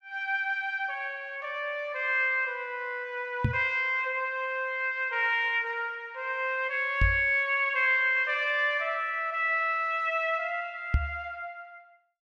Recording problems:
microphone bump; at 3.5 s, at 7 s and at 11 s; peak +6 dB vs average level

